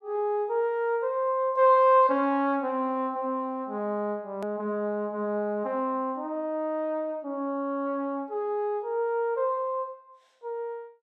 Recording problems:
hard cut with a click; at 4.5 s

